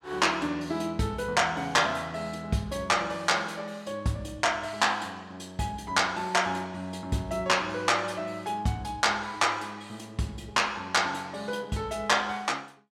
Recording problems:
none

